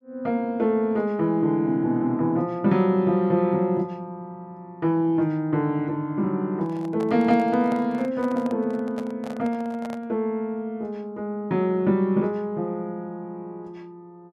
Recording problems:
handling noise; from 6.5 to 10 s; peak -9 dB vs average level

